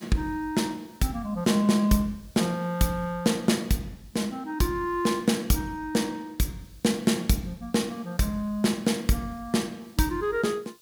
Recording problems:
hiss; SNR 29 dB

